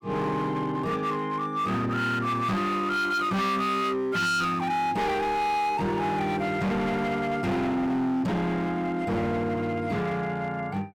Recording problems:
distortion; hard clipping, signal-to-distortion ratio 7 dB

